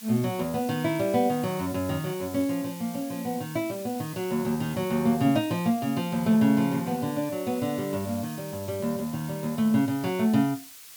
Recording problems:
background hiss; slope +3 dB per octave, SNR 16 dB

